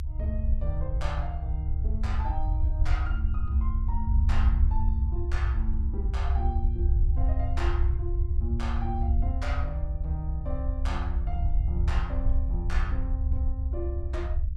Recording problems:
rumble; below 68 Hz, SNR -9 dB

